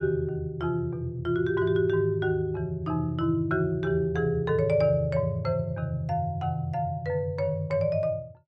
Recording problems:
none

